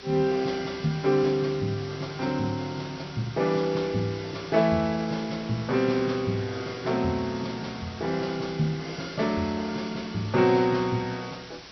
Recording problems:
treble cut off; nothing above 5.9 kHz
background hiss; slope -1 dB per octave, SNR 16 dB

